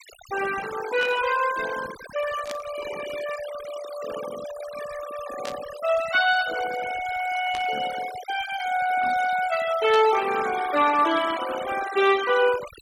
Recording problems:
denoising artefacts; signal-to-artefact ratio 12 dB
static burst; 5 times, first at 1 s; peak -6 dB vs average level

